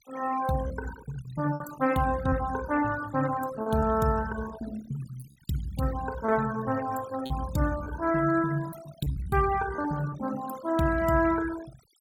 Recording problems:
noise reduction artefacts; signal-to-artefact ratio 14 dB
packet loss; 4% of the sound replaced, filled with repeated pitch periods

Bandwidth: 17 kHz